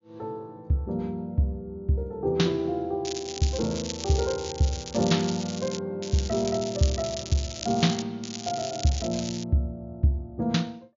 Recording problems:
treble cut off; nothing above 7.2 kHz
crackle; from 3 to 6 s, from 6 to 8 s and from 8 to 9.5 s; loose cable, SNR 9 dB

